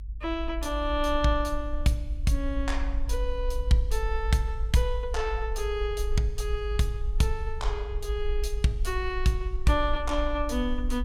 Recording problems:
rumble; below 52 Hz, SNR 4 dB

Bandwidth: 16.5 kHz